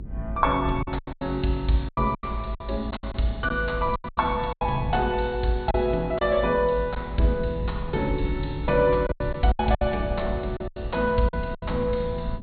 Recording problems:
treble missing; nothing above 4.4 kHz
rumble; below 86 Hz, SNR 8 dB
lost packets; 10% of the sound replaced, filled with silence

